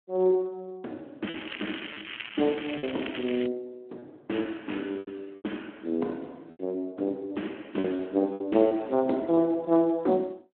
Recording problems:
telephone audio; 190 Hz to 3.3 kHz, Speex
packet loss; 6% of the sound replaced, filled with repeated pitch periods
crackling; from 1.5 to 3.5 s; loose cable, SNR 10 dB

